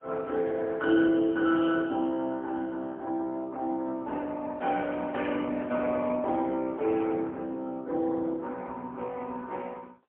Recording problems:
phone line; 260 Hz to 4 kHz, AMR-NB, then MP3

